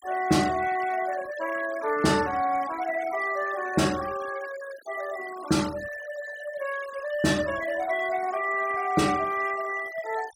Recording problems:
noise reduction artefacts; signal-to-artefact ratio 16 dB

